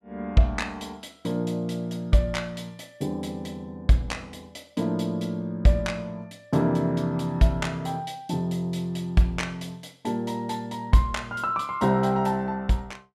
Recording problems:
none

